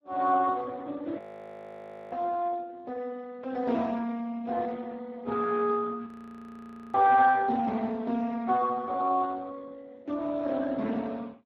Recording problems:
lossy compression; Speex, log-spectral distance 3 dB
frozen audio; at 1 s for 1 s and at 6 s for 1 s

